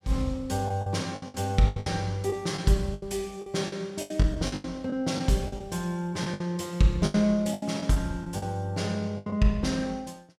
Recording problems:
packet loss; 13% of the sound replaced, filled with the last packet

